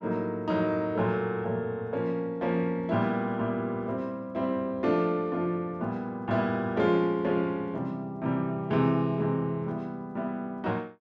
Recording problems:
none

